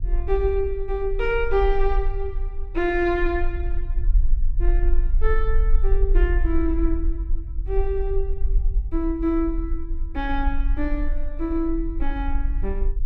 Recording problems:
rumble; below 44 Hz, strongest tone 20 Hz, SNR 0 dB

